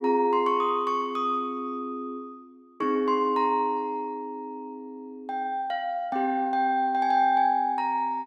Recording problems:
none

